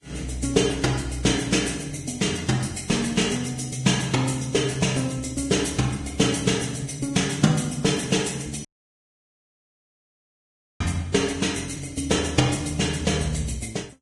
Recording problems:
lossy compression; Vorbis, log-spectral distance 6 dB, nothing above 10.4 kHz
dropout; at 8.5 s for 2 s

